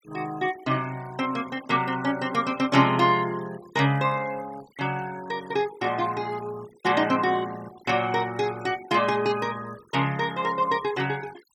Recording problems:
noise reduction artefacts; signal-to-artefact ratio 21 dB

